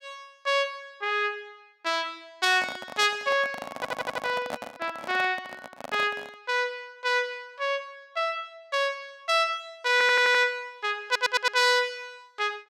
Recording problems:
handling noise; from 2.5 to 6.5 s; peak -2 dB vs average level
audio stuttering; at 4 s, at 10 s and at 11 s

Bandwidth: 16 kHz